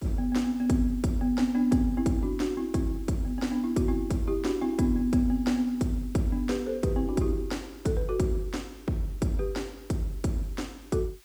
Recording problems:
hiss; slope +1 dB per octave, SNR 27 dB

